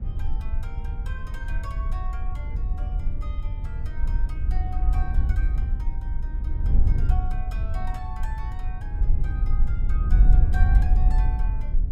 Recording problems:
wind on the microphone; below 60 Hz, SNR -16 dB

